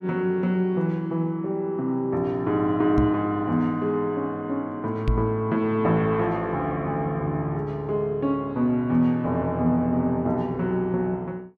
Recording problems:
microphone thump; at 3 s and at 5 s; peak +5 dB vs average level

